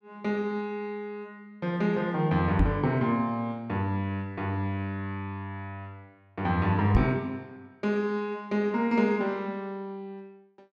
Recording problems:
microphone thump; at 2.5 s and at 7 s; peak +7 dB vs average level

